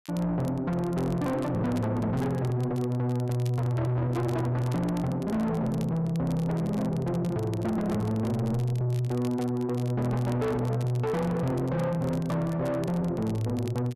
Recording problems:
distorted audio; soft clipping, signal-to-distortion ratio 6 dB
crackling; vinyl, SNR 23 dB

